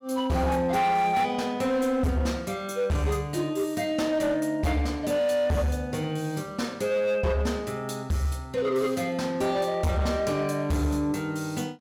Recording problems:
distorted audio; hard clipping, signal-to-distortion ratio 11 dB

